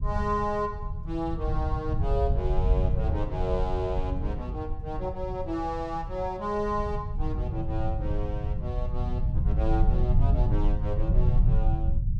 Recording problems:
rumble; below 100 Hz, SNR -3 dB

